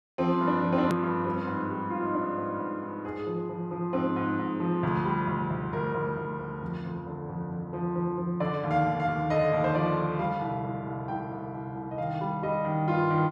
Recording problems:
hard cut with a click; at 1 s

